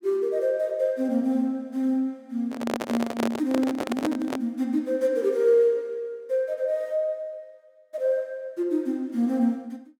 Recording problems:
microphone handling noise; from 2.5 to 4.5 s; peak +2 dB vs average level

